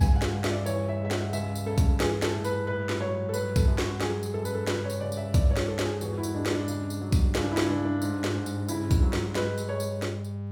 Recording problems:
hum; 50 Hz, harmonics up to 800 Hz, SNR 6 dB

